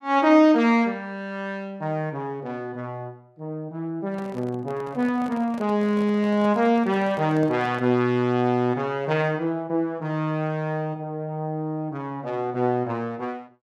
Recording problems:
handling noise; from 4 to 8 s; peak -9 dB vs average level

